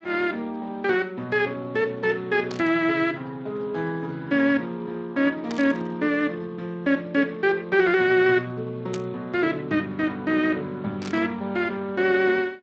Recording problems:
codec artefacts; Speex, log-spectral distance 3 dB, nothing above 7.3 kHz
burst of static; 4 times, first at 2.5 s; peak -8 dB vs average level

